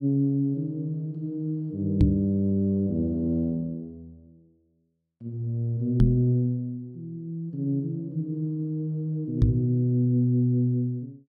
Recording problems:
microphone bump; at 2 s, at 6 s and at 9.5 s; peak +9 dB vs average level

